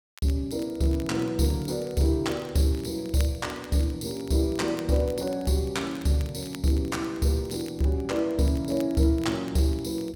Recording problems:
crackling; vinyl, SNR 23 dB

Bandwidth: 17 kHz